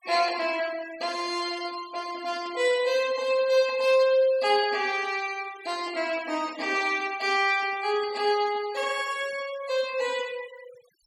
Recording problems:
noise reduction artefacts; signal-to-artefact ratio 19 dB

